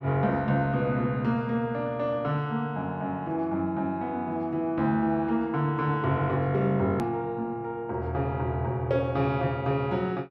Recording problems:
edit click; at 7 s

